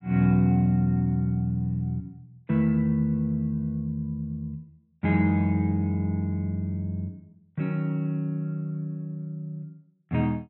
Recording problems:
none

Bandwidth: 4 kHz